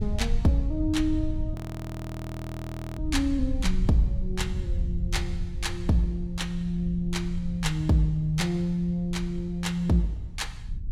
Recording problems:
rumble; below 84 Hz, SNR 6 dB
audio freezing; at 1.5 s for 1.5 s

